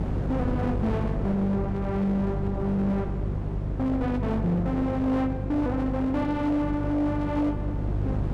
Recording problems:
distortion; hard clipping, uneven, signal-to-distortion ratio 10 dB
hum; 50 Hz, harmonics up to 550 Hz, SNR 5 dB
wind on the microphone; below 340 Hz, SNR 8 dB

